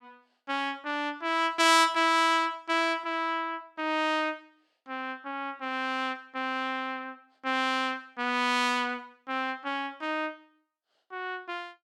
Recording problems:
none

